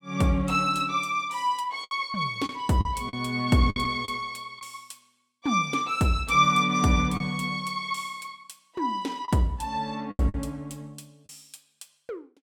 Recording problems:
packet loss; 5% of the sound replaced, filled with the last packet

